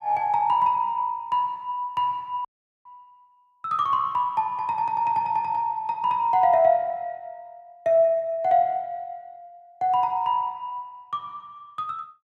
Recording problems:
audio cutting out; at 2.5 s

